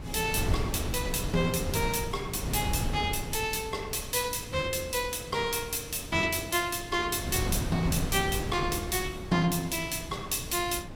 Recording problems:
wind on the microphone; below 270 Hz, SNR 7 dB

